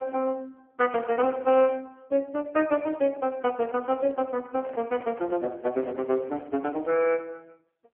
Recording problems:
telephone audio; 240 Hz to 3.1 kHz, AMR-NB
handling noise; from 4.5 to 7 s; peak -14 dB vs average level

